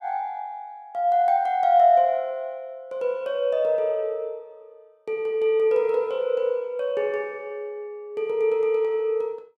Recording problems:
none

